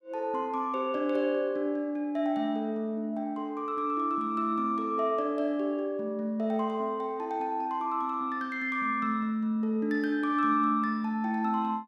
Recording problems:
none

